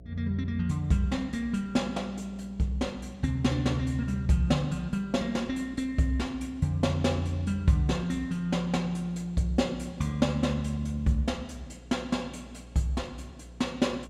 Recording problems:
mains hum; 60 Hz, harmonics up to 660 Hz, SNR 20 dB

